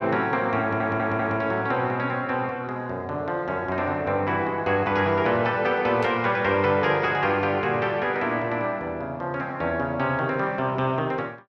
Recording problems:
stutter; at 0.5 s
static burst; at 6 s; peak -10 dB vs average level

